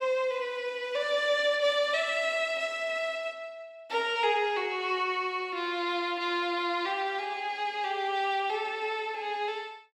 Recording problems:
none

